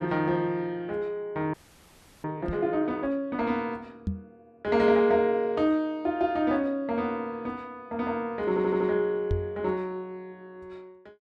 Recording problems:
audio freezing; at 1.5 s for 0.5 s
microphone thump; at 2.5 s, at 4 s and at 9.5 s; peak +1 dB vs average level
stutter; at 8.5 s

